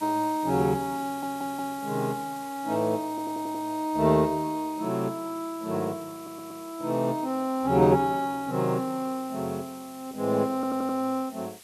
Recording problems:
background hiss; slope +2 dB per octave, SNR 19 dB
audio stuttering; 4 times, first at 1 s

